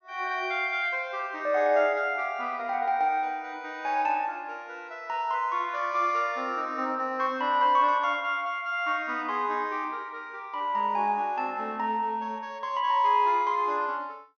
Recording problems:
treble missing; nothing above 6.5 kHz

